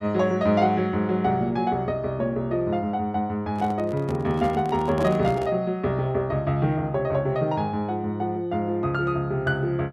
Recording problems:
microphone handling noise; from 3.5 to 5.5 s; peak -2 dB vs average level

